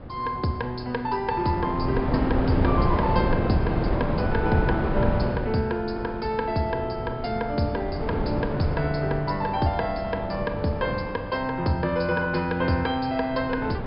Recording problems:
treble cut off; nothing above 5.5 kHz
wind noise; below 470 Hz, SNR 2 dB

